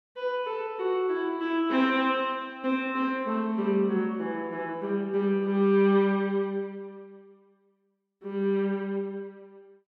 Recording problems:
none

